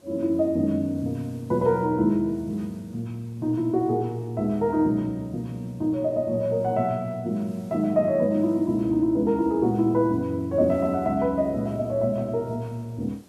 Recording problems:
hiss; SNR 29 dB

